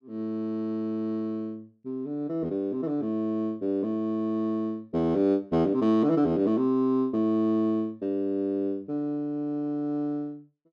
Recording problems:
none

